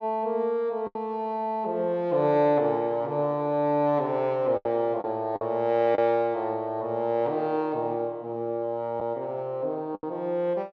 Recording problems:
packet loss; 3% of the sound replaced, filled with the last packet

